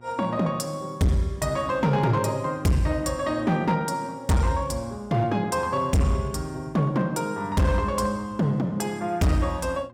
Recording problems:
distortion; hard clipping, signal-to-distortion ratio 10 dB
electrical hum; 60 Hz, harmonics up to 1.2 kHz, SNR 26 dB

